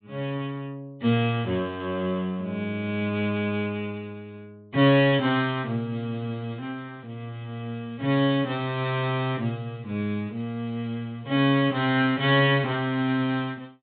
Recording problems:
treble missing; nothing above 4 kHz

